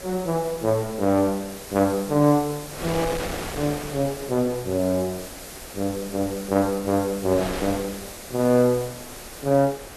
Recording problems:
background hiss; slope +2 dB per octave, SNR 15 dB
wind noise; below 1.9 kHz, SNR 13 dB

